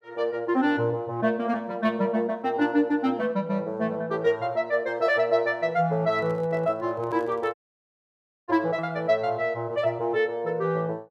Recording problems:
handling noise; from 6 to 7.5 s; peak -14 dB vs average level
dropout; at 7.5 s for 1 s

